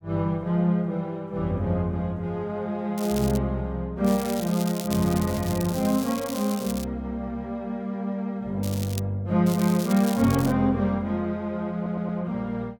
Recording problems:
crackle; 4 times, first at 3 s; loose cable, SNR 12 dB
audio stuttering; at 12 s

